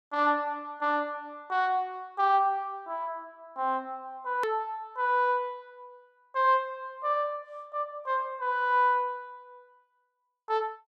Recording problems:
click at an edit; at 4.5 s

